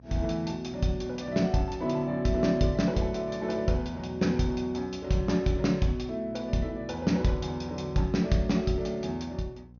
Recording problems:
treble missing; nothing above 6.6 kHz
electrical hum; 60 Hz, harmonics up to 540 Hz, SNR 22 dB

